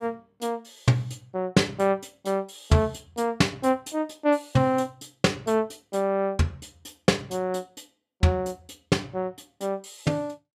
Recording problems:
none

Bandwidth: 15.5 kHz